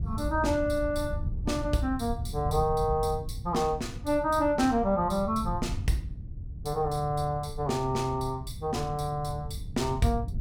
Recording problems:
wind noise; below 120 Hz, SNR 8 dB

